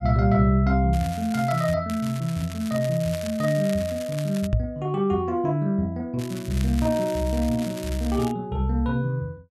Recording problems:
crackling; at 1 s, from 2 to 4.5 s and from 6 to 8.5 s; loose cable, SNR 16 dB
microphone bump; at 4.5 s; peak +5 dB vs average level

